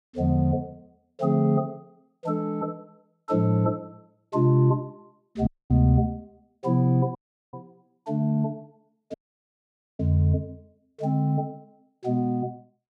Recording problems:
audio cutting out; at 5.5 s, at 7 s and at 9 s for 1 s

